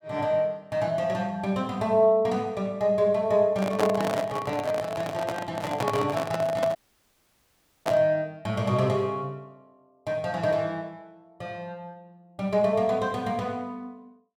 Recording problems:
microphone handling noise; from 3.5 to 8 s; peak +3 dB vs average level
audio cutting out; at 7 s for 1 s

